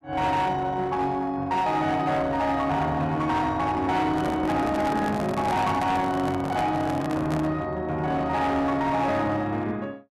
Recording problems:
distortion; hard clipping, uneven, signal-to-distortion ratio 10 dB
handling noise; from 4 to 7.5 s; peak -2 dB vs average level

